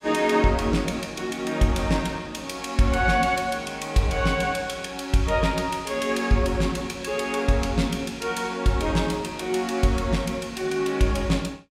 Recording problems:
none

